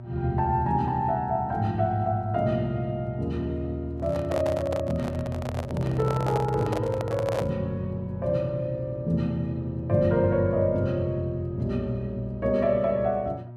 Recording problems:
electrical hum; 60 Hz, harmonics up to 960 Hz, SNR 14 dB
microphone handling noise; from 4 to 7.5 s; peak -1 dB vs average level

